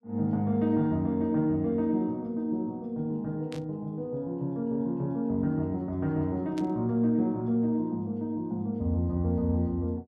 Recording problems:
burst of static; at 3.5 s and at 6.5 s; peak -11 dB vs average level

